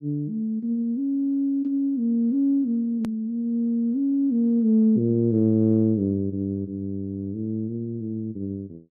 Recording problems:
click at an edit; at 3 s

